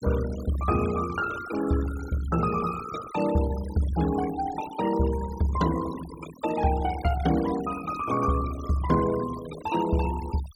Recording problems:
denoising artefacts; signal-to-artefact ratio 15 dB

